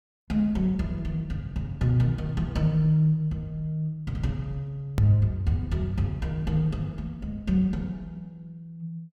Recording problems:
edit click; at 5 s

